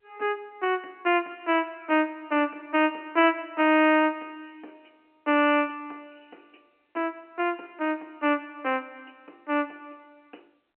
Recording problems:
telephone audio; 240 Hz to 3.1 kHz, G.711

